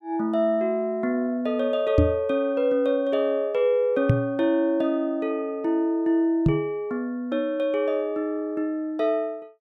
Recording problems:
knock on the microphone; at 2 s, at 4 s and at 6.5 s; peak +8 dB vs average level

